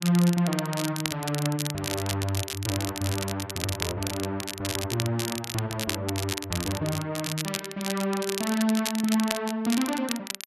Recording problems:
crackle; vinyl, SNR 4 dB

